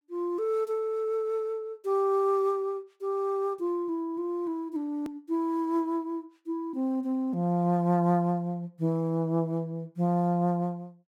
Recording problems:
hard cut with a click; at 5 s

